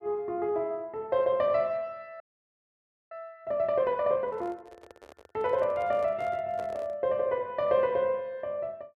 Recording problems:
audio freezing; at 2 s for 1 s
handling noise; from 4.5 to 7 s; peak -11 dB vs average level

